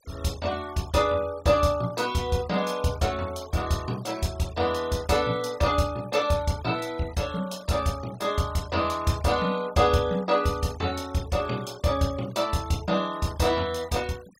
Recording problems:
denoising artefacts; signal-to-artefact ratio 21 dB

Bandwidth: 16 kHz